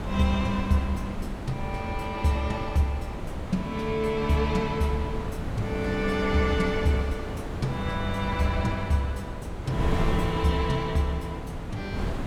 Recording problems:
wind noise; below 350 Hz, SNR 5 dB

